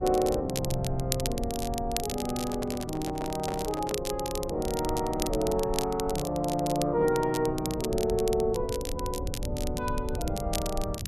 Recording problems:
rumble; below 98 Hz, SNR 10 dB
crackling; vinyl, SNR 9 dB
handling noise; from 2.5 to 4 s; peak -1 dB vs average level

